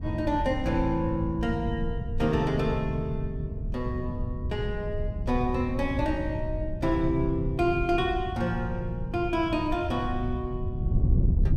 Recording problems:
wind on the microphone; below 120 Hz, SNR 4 dB

